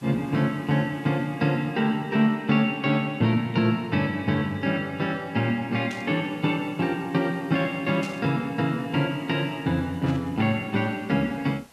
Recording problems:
background hiss; slope -3 dB per octave, SNR 29 dB
static burst; at 6 s, at 8 s and at 10 s; peak -10 dB vs average level

